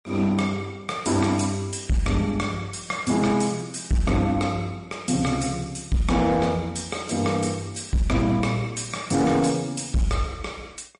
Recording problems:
lossy codec; MP3, log-spectral distance 4 dB, nothing above 9.8 kHz
distorted audio; hard clipping, signal-to-distortion ratio 11 dB

